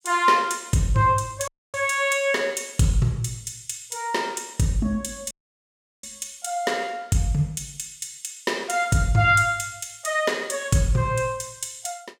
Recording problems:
audio cutting out; at 1.5 s and at 5.5 s for 0.5 s

